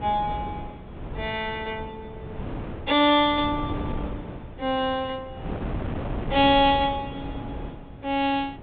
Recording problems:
treble missing; nothing above 4 kHz
wind on the microphone; below 420 Hz, SNR 11 dB

